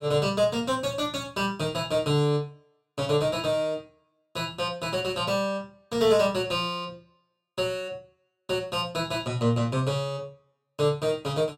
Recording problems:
none

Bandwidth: 16.5 kHz